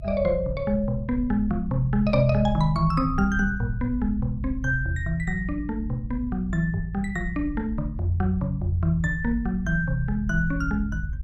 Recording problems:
low-frequency rumble; below 82 Hz, SNR 8 dB

